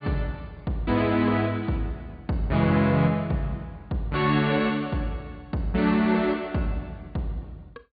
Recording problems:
low-pass filter; nothing above 4.6 kHz

